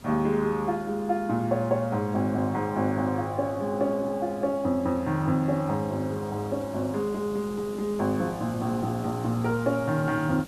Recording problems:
background hiss; SNR 19 dB

